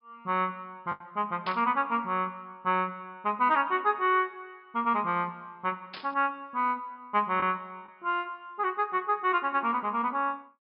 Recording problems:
treble cut off; nothing above 5.2 kHz
packet loss; 1.2% of the sound replaced, filled with the last packet
burst of static; at 1.5 s and at 6 s; peak -5 dB vs average level

